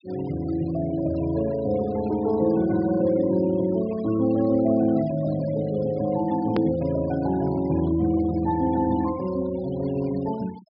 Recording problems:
low-pass filter; nothing above 5.5 kHz
noise reduction artefacts; signal-to-artefact ratio 22 dB
click at an edit; at 6.5 s

